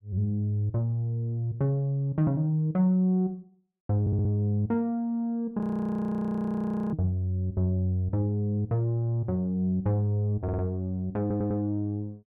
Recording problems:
stutter; at 4 s, at 10 s and at 11 s
audio freezing; at 5.5 s for 1.5 s

